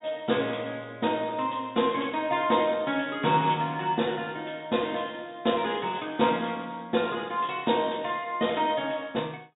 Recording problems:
treble missing; nothing above 4 kHz

